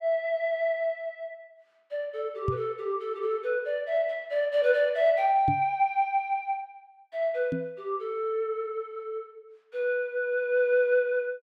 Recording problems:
microphone bump; at 2.5 s, at 5.5 s and at 7.5 s; peak +2 dB vs average level

